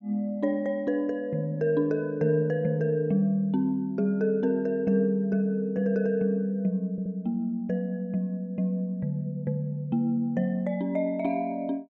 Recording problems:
audio stuttering; at 7 s

